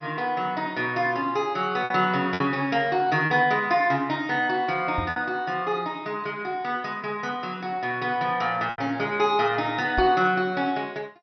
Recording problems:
lossy compression; MP2, log-spectral distance 2 dB, nothing above 5.8 kHz
lost packets; 3% of the sound replaced, filled with repeated pitch periods
microphone thump; at 5 s and at 10 s; peak -3 dB vs average level

